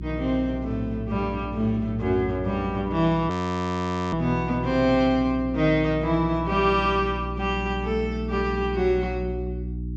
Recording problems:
low-pass filter; nothing above 8 kHz
electrical hum; 60 Hz, harmonics up to 360 Hz, SNR 9 dB
frozen audio; at 3.5 s for 1 s

